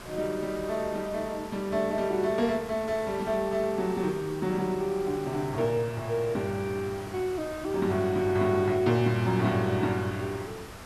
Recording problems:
hiss; slope -4 dB per octave, SNR 15 dB

